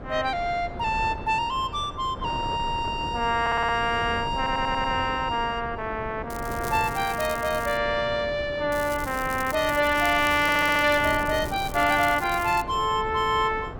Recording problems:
wind on the microphone; below 560 Hz, SNR 12 dB
audio stuttering; at 3.5 s, at 4.5 s and at 10 s
crackle; from 6.5 to 8 s and from 8.5 to 13 s; loose cable, SNR 16 dB

